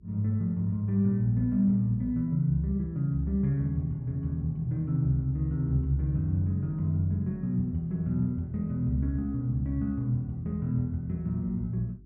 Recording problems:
hum; 50 Hz, harmonics up to 400 Hz, SNR 25 dB

